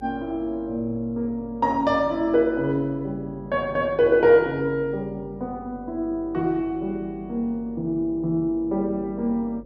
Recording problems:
mains hum; 50 Hz, harmonics up to 550 Hz, SNR 22 dB

